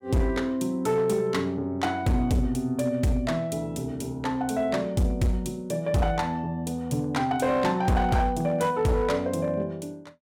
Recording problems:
distortion; hard clipping, signal-to-distortion ratio 12 dB

